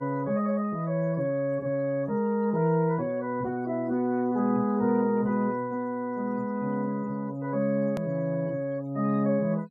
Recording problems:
denoising artefacts; signal-to-artefact ratio 27 dB
click at an edit; at 8 s

